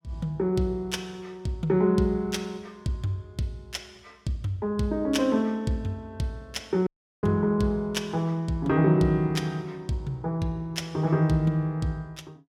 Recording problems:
audio cutting out; at 7 s

